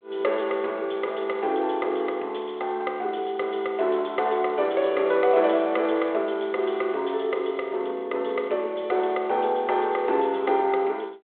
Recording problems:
telephone audio; 300 Hz to 3.5 kHz, G.726

